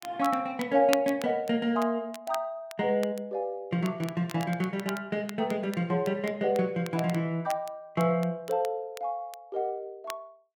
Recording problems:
crackling; vinyl, SNR 16 dB

